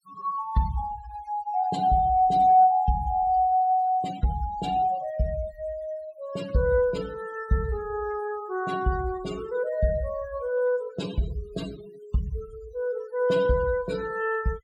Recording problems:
denoising artefacts; signal-to-artefact ratio 20 dB

